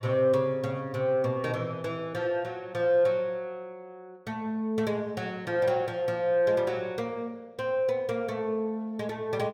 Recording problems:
none

